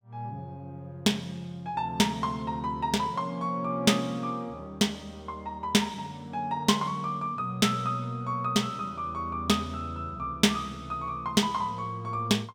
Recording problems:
none

